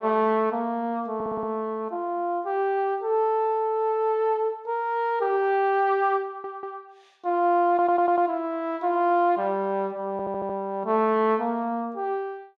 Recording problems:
stutter; 4 times, first at 1 s

